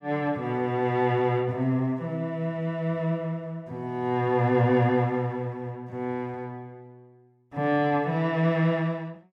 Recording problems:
none

